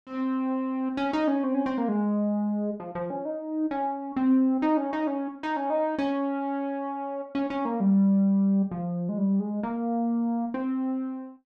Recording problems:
none

